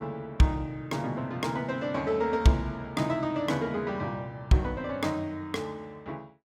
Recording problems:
none

